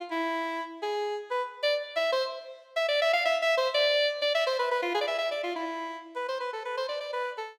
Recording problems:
none

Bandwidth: 16.5 kHz